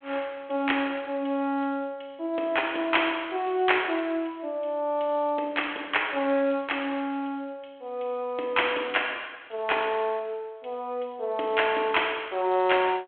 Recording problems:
telephone audio; 260 Hz to 3.4 kHz, G.726

